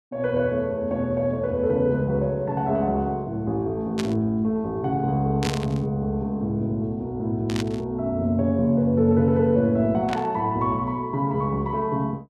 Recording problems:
static burst; 4 times, first at 4 s; peak -2 dB vs average level

